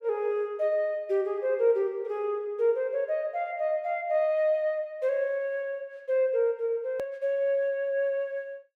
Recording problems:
click at an edit; at 7 s

